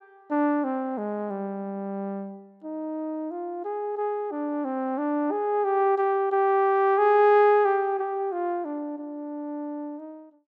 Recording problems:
none

